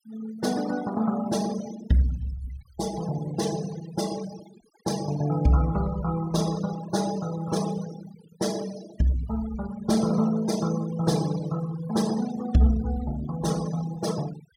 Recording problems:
noise reduction artefacts; signal-to-artefact ratio 15 dB

